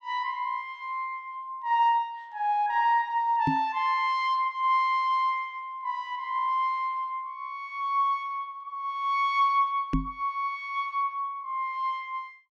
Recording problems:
knock on the microphone; at 3.5 s and at 10 s; peak +5 dB vs average level

